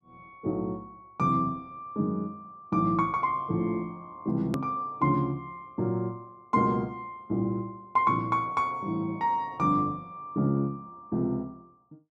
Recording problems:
click at an edit; at 4.5 s

